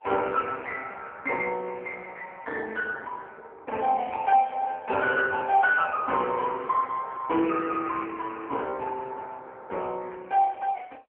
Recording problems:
telephone audio; 280 Hz to 3 kHz, AMR-NB

